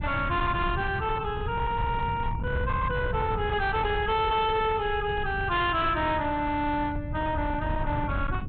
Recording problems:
low-pass filter; nothing above 4 kHz
distortion; hard clipping, signal-to-distortion ratio 11 dB
wind noise; below 140 Hz, SNR 7 dB

